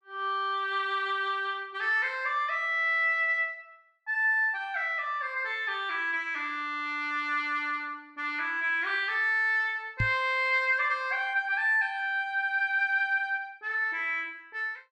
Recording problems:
microphone bump; at 10 s; peak +1 dB vs average level

